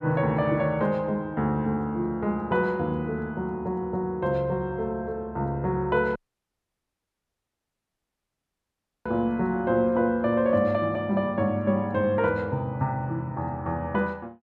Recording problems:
dropout; at 6 s for 3 s

